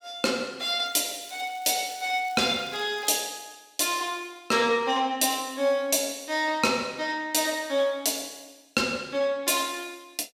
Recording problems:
crackle; from 1 to 3 s; loose cable, SNR 24 dB

